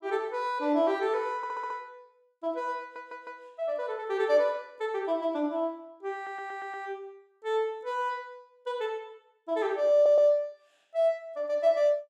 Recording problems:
stutter; 4 times, first at 1.5 s

